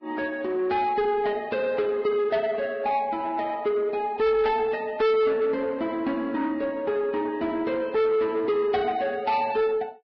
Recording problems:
lossy compression; Vorbis, log-spectral distance 2 dB
distorted audio; soft clipping, signal-to-distortion ratio 7 dB

